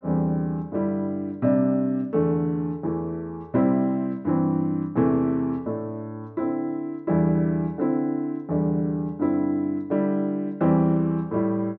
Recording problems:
treble missing; nothing above 6.5 kHz

